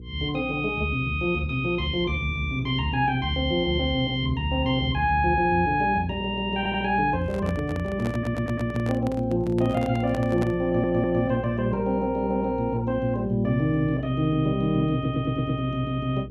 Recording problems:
hum; 60 Hz, harmonics up to 480 Hz, SNR 14 dB
stutter; 4 times, first at 6.5 s
handling noise; from 7 to 11 s; peak -4 dB vs average level

